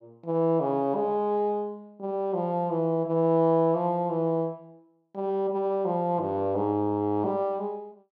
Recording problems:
none

